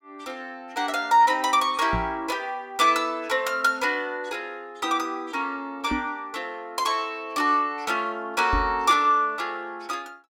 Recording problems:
microphone bump; at 2 s, at 6 s and at 8.5 s; peak -1 dB vs average level

